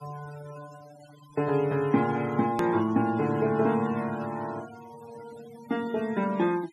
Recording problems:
noise reduction artefacts; signal-to-artefact ratio 20 dB
hard cut with a click; at 2.5 s

